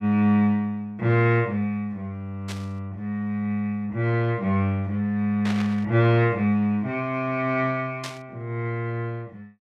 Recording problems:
burst of static; at 2.5 s, at 5.5 s and at 8 s; peak -5 dB vs average level

